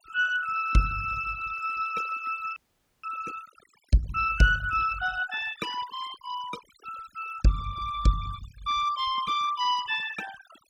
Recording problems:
denoising artefacts; signal-to-artefact ratio 14 dB
audio freezing; at 2.5 s

